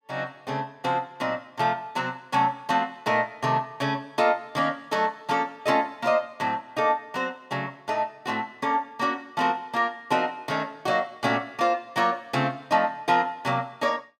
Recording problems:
none

